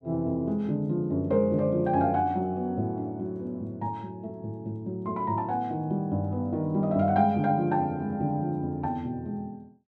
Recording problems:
none

